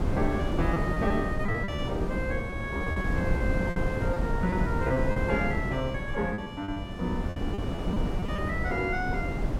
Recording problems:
wind on the microphone; below 290 Hz, SNR 0 dB
lost packets; 9% of the sound replaced, filled with repeated pitch periods

